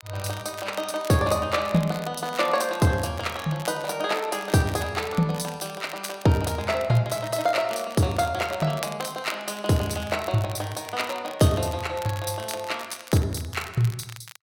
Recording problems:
crackling; vinyl, SNR 16 dB

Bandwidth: 16.5 kHz